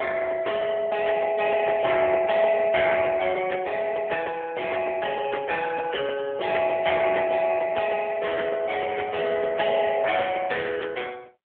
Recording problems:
telephone audio; 370 Hz to 3 kHz, AMR-NB

